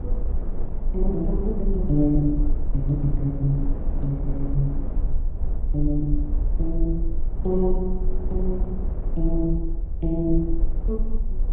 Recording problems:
low-pass filter; nothing above 4 kHz
low-frequency rumble; below 42 Hz, strongest tone 20 Hz, SNR 2 dB
wind noise; below 310 Hz, SNR 11 dB

